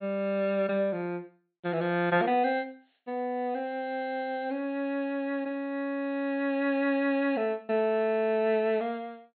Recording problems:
treble cut off; nothing above 4.3 kHz

